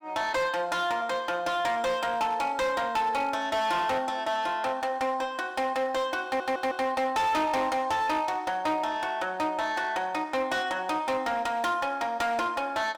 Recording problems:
distorted audio; hard clipping, uneven, signal-to-distortion ratio 11 dB
audio stuttering; at 6.5 s

